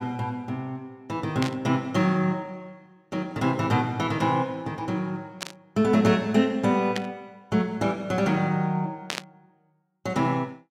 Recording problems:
static burst; 4 times, first at 1.5 s; peak 0 dB vs average level

